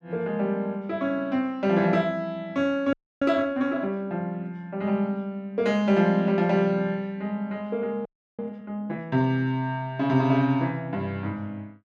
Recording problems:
audio freezing; at 3 s and at 8 s

